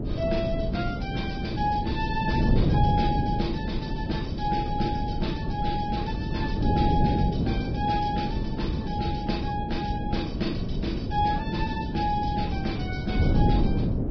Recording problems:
treble missing; nothing above 5.3 kHz
codec artefacts; Vorbis, log-spectral distance 3 dB
hum; 60 Hz, harmonics up to 660 Hz, SNR 22 dB
wind on the microphone; below 240 Hz, SNR -2 dB

